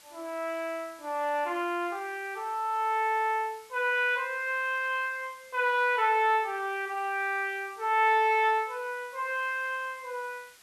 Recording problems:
background hiss; slope +1 dB per octave, SNR 25 dB

